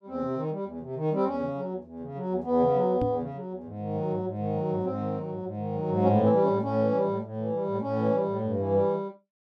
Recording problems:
microphone thump; at 3 s; peak 0 dB vs average level

